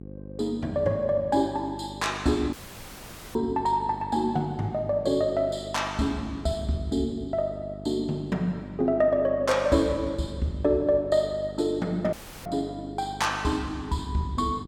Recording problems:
hum; 50 Hz, harmonics up to 750 Hz, SNR 14 dB
dropout; at 2.5 s for 1 s and at 12 s

